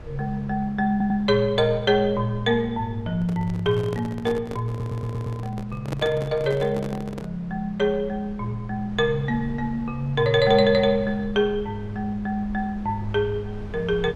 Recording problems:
low-frequency rumble; below 120 Hz, SNR 18 dB
audio stuttering; at 1 s and at 4.5 s
microphone handling noise; from 3 to 7.5 s; peak -3 dB vs average level

